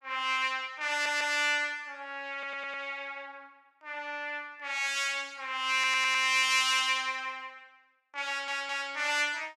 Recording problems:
stutter; 4 times, first at 1 s

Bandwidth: 15 kHz